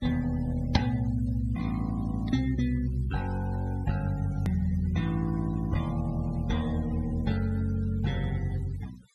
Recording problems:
noise reduction artefacts; signal-to-artefact ratio 19 dB
edit click; at 4.5 s

